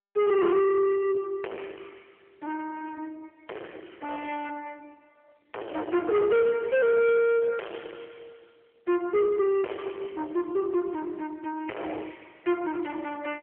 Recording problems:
telephone audio; 320 Hz to 3.1 kHz, AMR-NB
distortion; soft clipping, signal-to-distortion ratio 3 dB

